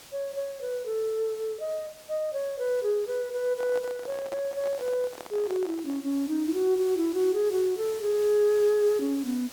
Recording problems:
background hiss; slope -1 dB per octave, SNR 18 dB
handling noise; from 3.5 to 6 s; peak -8 dB vs average level

